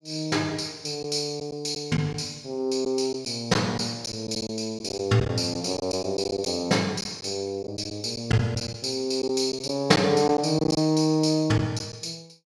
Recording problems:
lost packets; 6% of the sound replaced, filled with silence

